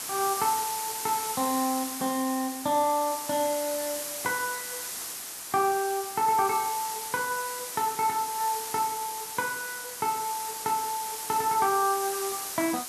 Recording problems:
background hiss; slope 0 dB per octave, SNR 5 dB

